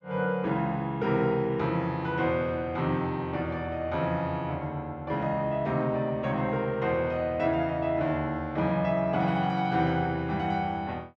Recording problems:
none

